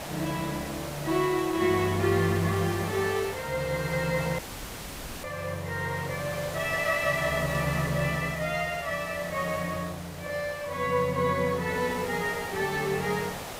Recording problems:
hiss; SNR 10 dB
dropout; at 4.5 s for 1 s

